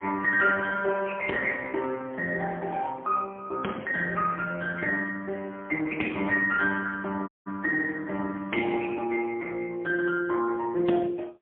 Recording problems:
telephone audio; 240 Hz to 2.5 kHz, AMR-NB, then MP3
audio cutting out; at 7.5 s

